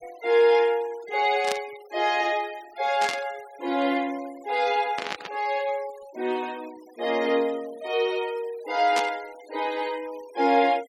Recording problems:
denoising artefacts; signal-to-artefact ratio 22 dB
burst of static; 4 times, first at 1.5 s; peak 0 dB vs average level

